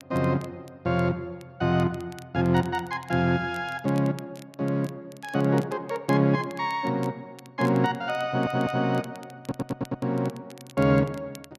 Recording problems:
crackle; vinyl, SNR 25 dB
audio stuttering; at 8.5 s and at 9.5 s

